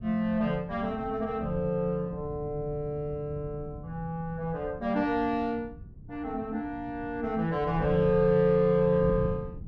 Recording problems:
wind noise; below 160 Hz, SNR 14 dB

